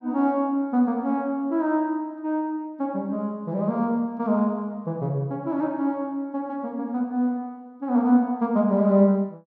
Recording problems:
none

